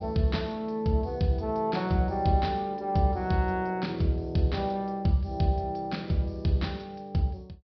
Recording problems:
treble missing; nothing above 5.5 kHz

